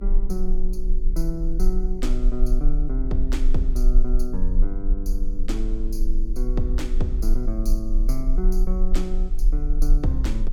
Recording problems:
hum; 60 Hz, harmonics up to 420 Hz, SNR 11 dB
rumble; below 34 Hz, strongest tone 20 Hz, SNR -4 dB

